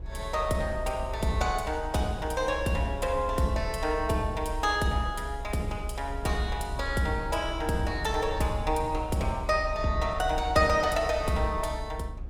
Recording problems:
rumble; below 64 Hz, strongest tone 34 Hz, SNR 9 dB

